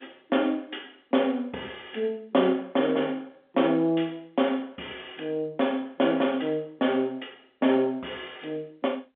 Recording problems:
telephone audio; 220 Hz to 3.5 kHz, G.711

